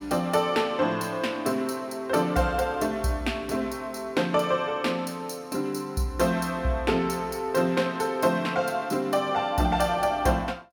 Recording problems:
none

